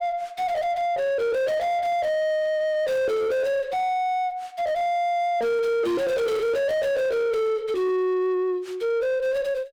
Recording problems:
distortion; soft clipping, signal-to-distortion ratio 7 dB

